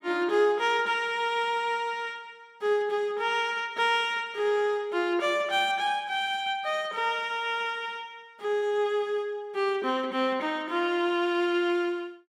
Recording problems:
none

